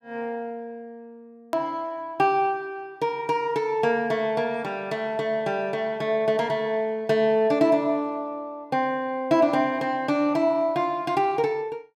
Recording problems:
click at an edit; at 1.5 s

